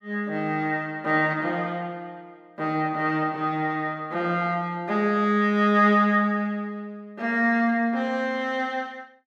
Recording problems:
none

